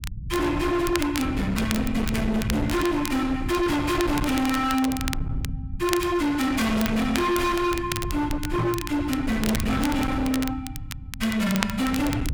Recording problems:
distortion; hard clipping, uneven, signal-to-distortion ratio 7 dB
low-frequency rumble; below 180 Hz, SNR 8 dB
crackling; vinyl, SNR 11 dB
microphone bump; at 8.5 s; peak +2 dB vs average level

